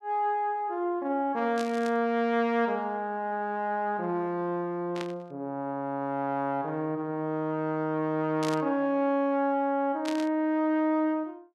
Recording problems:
burst of static; 4 times, first at 1.5 s; peak -4 dB vs average level

